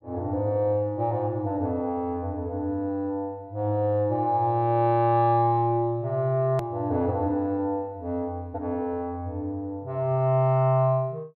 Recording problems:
treble cut off; nothing above 5.5 kHz
edit click; at 6.5 s

